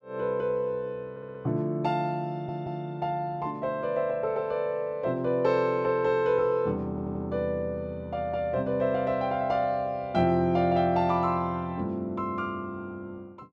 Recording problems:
stutter; at 1 s, at 2.5 s and at 7 s

